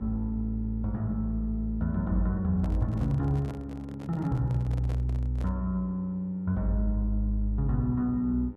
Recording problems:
mains hum; 50 Hz, harmonics up to 1.4 kHz, SNR 22 dB
microphone handling noise; from 2.5 to 5.5 s; peak -10 dB vs average level

